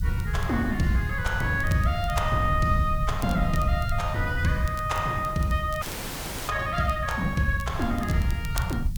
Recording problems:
background hiss; slope +7 dB per octave, SNR 24 dB
low-frequency rumble; below 110 Hz, SNR 5 dB
crackling; vinyl, SNR 20 dB
frozen audio; at 6 s for 0.5 s

